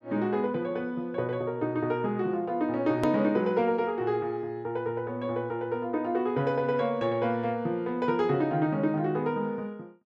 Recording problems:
click at an edit; at 3 s

